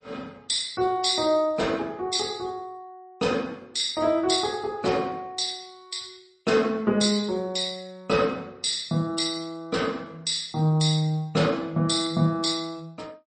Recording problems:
lossy codec; MP3, log-spectral distance 4 dB, nothing above 8.2 kHz

